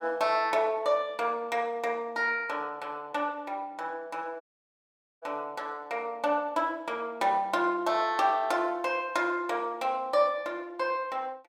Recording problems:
audio cutting out; at 4.5 s for 1 s

